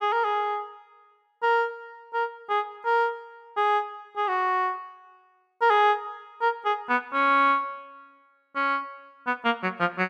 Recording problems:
none

